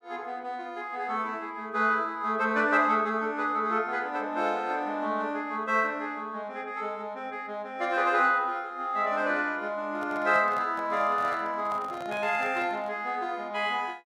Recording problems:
handling noise; from 10 to 13 s; peak -9 dB vs average level

